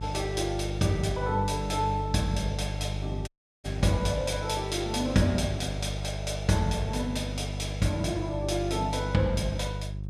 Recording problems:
hum; 50 Hz, harmonics up to 400 Hz, SNR 6 dB
dropout; at 3.5 s

